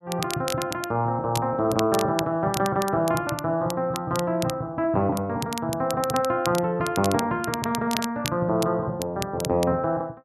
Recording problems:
crackling; vinyl, SNR 11 dB

